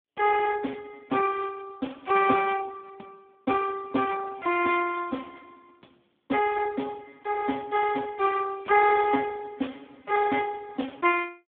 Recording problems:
telephone audio; 190 Hz to 2.7 kHz, Speex

